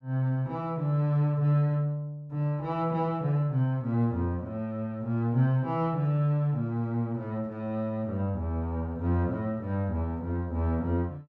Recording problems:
none

